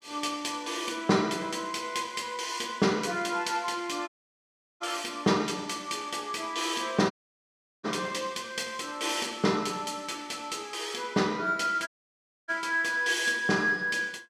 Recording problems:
audio cutting out; at 4 s for 0.5 s, at 7 s for 0.5 s and at 12 s for 0.5 s

